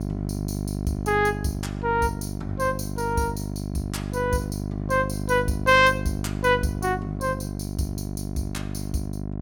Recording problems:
electrical hum; 50 Hz, harmonics up to 750 Hz, SNR 5 dB

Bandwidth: 17.5 kHz